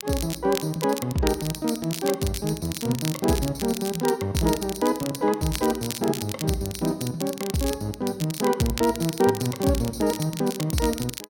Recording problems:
crackle; vinyl, SNR 9 dB

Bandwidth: 16.5 kHz